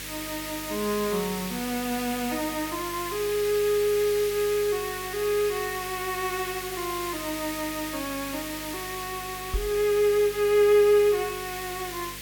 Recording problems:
hum; 50 Hz, harmonics up to 550 Hz, SNR 20 dB
hiss; SNR 8 dB
microphone thump; at 9.5 s; peak +1 dB vs average level

